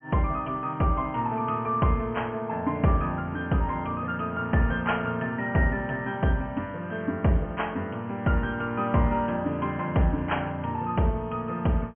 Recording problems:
low-pass filter; nothing above 3.2 kHz

